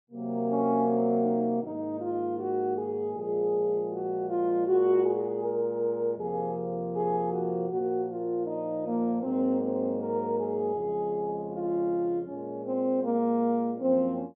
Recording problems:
treble cut off; nothing above 3.5 kHz

